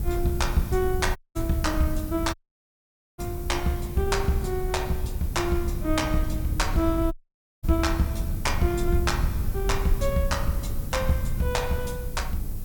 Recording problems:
hiss; slope -1 dB per octave, SNR 16 dB
rumble; below 90 Hz, SNR 4 dB
audio cutting out; at 1 s, at 2.5 s for 1 s and at 7 s for 0.5 s

